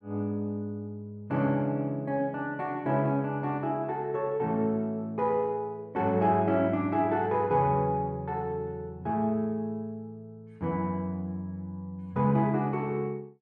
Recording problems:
none

